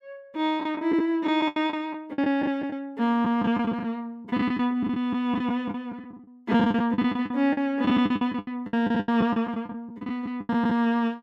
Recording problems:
packet loss; 16% of the sound replaced, filled with the last packet

